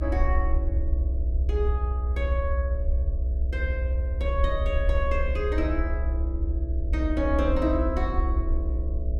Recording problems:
mains hum; 60 Hz, harmonics up to 660 Hz, SNR 12 dB
low-frequency rumble; below 64 Hz, strongest tone 62 Hz, SNR -4 dB

